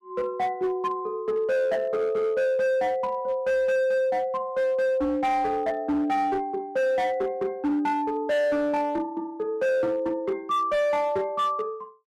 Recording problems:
distorted audio; hard clipping, signal-to-distortion ratio 10 dB

